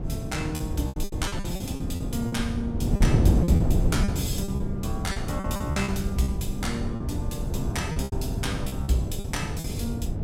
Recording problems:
wind noise; below 180 Hz, SNR -3 dB
packet loss; 12% of the sound replaced, filled with repeated pitch periods

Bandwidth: 16 kHz